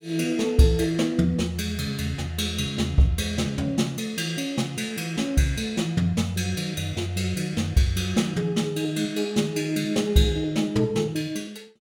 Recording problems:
none

